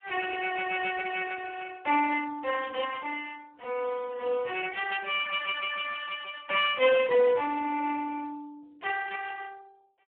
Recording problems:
telephone audio; 300 Hz to 3 kHz, Speex

